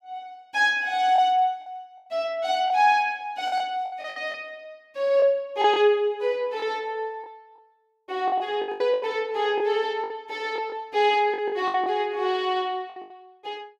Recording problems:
packet loss; 9% of the sound replaced, filled with the last packet

